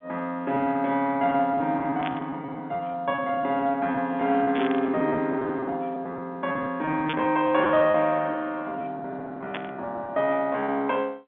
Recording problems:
telephone audio; 190 Hz to 3.7 kHz, G.711
packet loss; 14% of the sound replaced, filled with repeated pitch periods
burst of static; 4 times, first at 2 s; peak 0 dB vs average level

